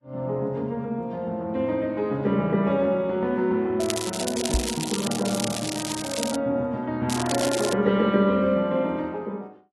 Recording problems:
codec artefacts; AAC, log-spectral distance 4 dB
crackling; from 4 to 6.5 s and at 7 s; loose cable, SNR 6 dB
microphone thump; at 4.5 s; peak +3 dB vs average level

